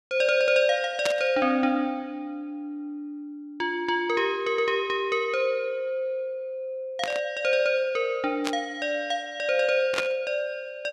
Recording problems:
static burst; 4 times, first at 1 s; peak +2 dB vs average level

